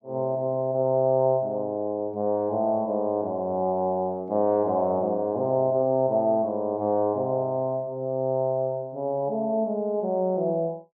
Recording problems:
none

